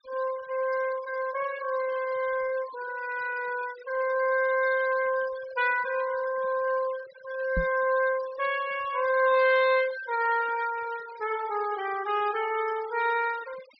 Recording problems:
treble missing; nothing above 5.5 kHz
noise reduction artefacts; signal-to-artefact ratio 17 dB
knock on the microphone; at 7.5 s; peak 0 dB vs average level

